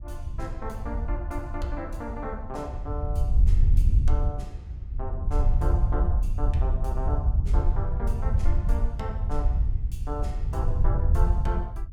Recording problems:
wind noise; below 74 Hz, SNR -9 dB

